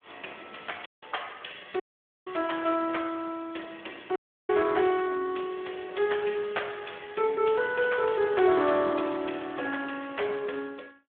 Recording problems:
telephone audio; 300 Hz to 3.4 kHz, Speex
dropout; at 1 s, at 2 s and at 4 s

